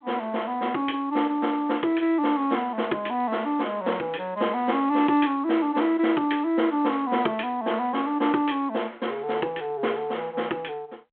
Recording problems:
phone line; 260 Hz to 3.4 kHz, G.726

